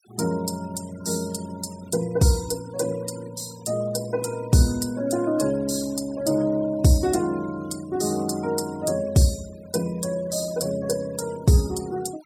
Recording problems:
denoising artefacts; signal-to-artefact ratio 20 dB

